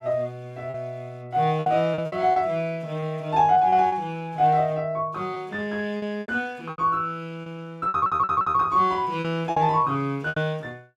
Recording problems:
packet loss; 10% of the sound replaced, filled with repeated pitch periods
audio stuttering; at 8 s

